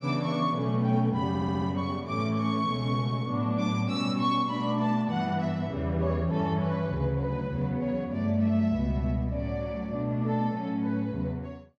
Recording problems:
audio stuttering; at 1.5 s

